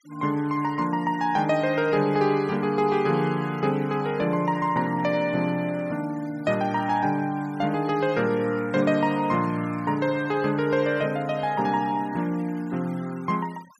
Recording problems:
noise reduction artefacts; signal-to-artefact ratio 24 dB

